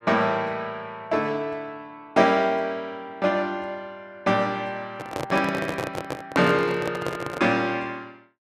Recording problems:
handling noise; from 5 to 7.5 s; peak +1 dB vs average level

